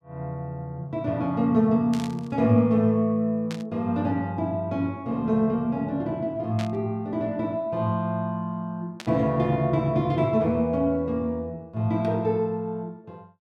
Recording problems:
static burst; 4 times, first at 2 s; peak -7 dB vs average level

